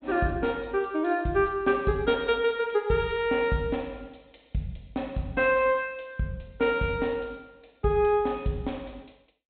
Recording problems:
low-pass filter; nothing above 4 kHz

